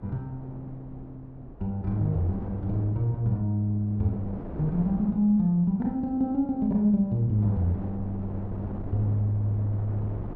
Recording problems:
wind on the microphone; below 340 Hz, SNR 13 dB

